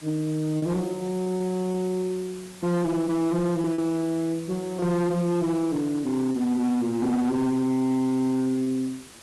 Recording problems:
lossy codec; AAC, log-spectral distance 4 dB, nothing above 11.3 kHz
distortion; hard clipping, signal-to-distortion ratio 11 dB
hiss; slope -1 dB per octave, SNR 20 dB
packet loss; 2% of the sound replaced, filled with repeated pitch periods

